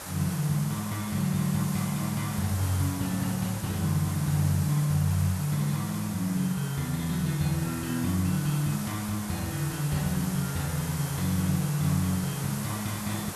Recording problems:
hiss; SNR 9 dB

